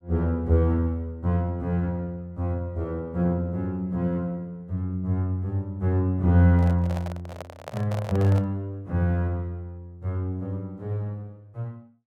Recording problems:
handling noise; from 6.5 to 8.5 s; peak -5 dB vs average level

